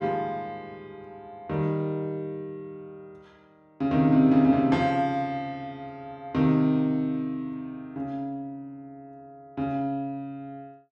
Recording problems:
none

